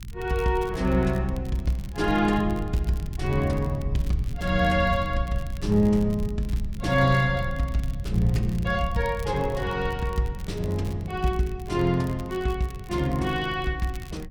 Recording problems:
rumble; below 100 Hz, SNR 9 dB
crackling; vinyl, SNR 24 dB

